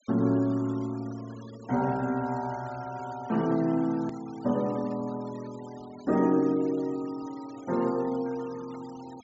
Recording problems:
treble cut off; nothing above 8 kHz
denoising artefacts; signal-to-artefact ratio 22 dB
hard cut with a click; at 4 s

